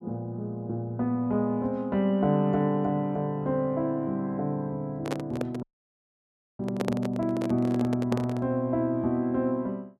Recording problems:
microphone handling noise; from 5 to 8.5 s; peak +1 dB vs average level
dropout; at 5.5 s for 1 s

